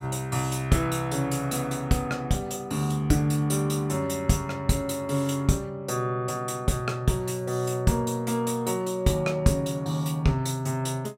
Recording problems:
none

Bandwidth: 16 kHz